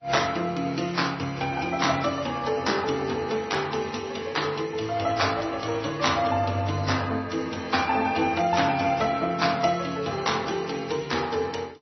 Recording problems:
lossy compression; MP3, then AAC, log-spectral distance 5 dB, nothing above 5.8 kHz

